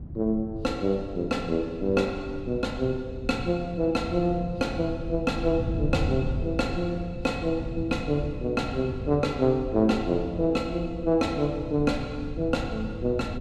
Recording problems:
wind on the microphone; below 140 Hz, SNR 9 dB

